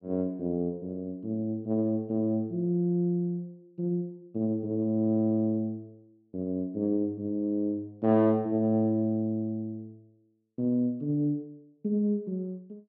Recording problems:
none

